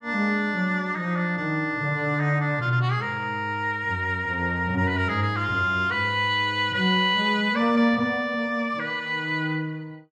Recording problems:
none

